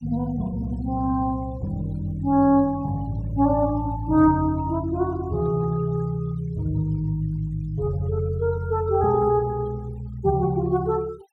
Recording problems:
denoising artefacts; signal-to-artefact ratio 27 dB

